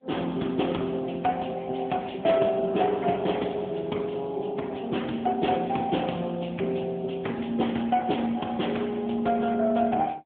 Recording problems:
telephone audio; 150 Hz to 3.4 kHz, AMR-NB

